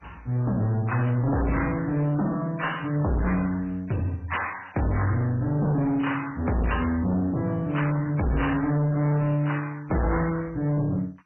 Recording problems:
codec artefacts; MP3, then MP2, log-spectral distance 4 dB, nothing above 2.8 kHz
distortion; hard clipping, uneven, signal-to-distortion ratio 7 dB

